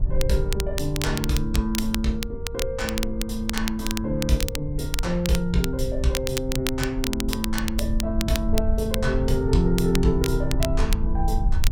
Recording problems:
rumble; below 66 Hz, SNR 4 dB
crackle; vinyl, SNR 7 dB

